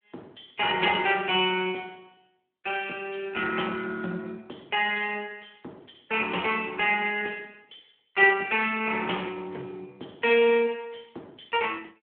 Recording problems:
phone line; 300 Hz to 3.3 kHz, Speex

